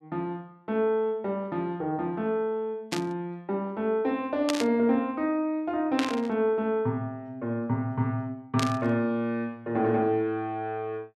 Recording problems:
burst of static; 4 times, first at 3 s; peak +3 dB vs average level

